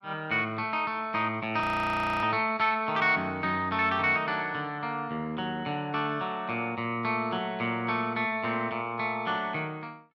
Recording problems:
audio freezing; at 1.5 s for 0.5 s

